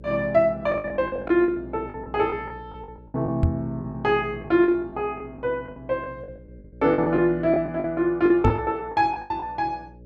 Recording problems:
mains hum; 60 Hz, harmonics up to 600 Hz, SNR 21 dB
packet loss; 13% of the sound replaced, filled with the last packet
knock on the microphone; at 3.5 s and at 8.5 s; peak +7 dB vs average level

